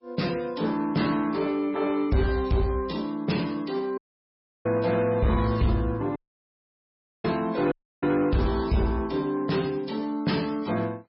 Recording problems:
codec artefacts; MP3, log-spectral distance 3 dB, nothing above 5.3 kHz
distorted audio; soft clipping, signal-to-distortion ratio 12 dB
dropout; at 4 s for 0.5 s, at 6 s for 1 s and at 7.5 s

